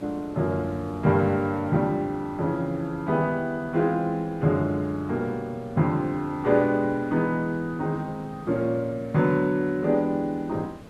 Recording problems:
hiss; slope -7 dB per octave, SNR 20 dB

